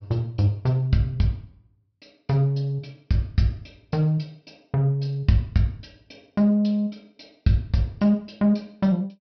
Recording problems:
treble cut off; nothing above 5.5 kHz

